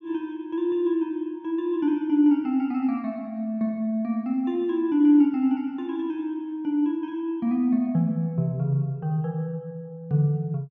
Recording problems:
none

